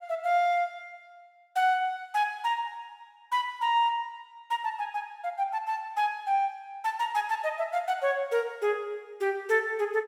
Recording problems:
none

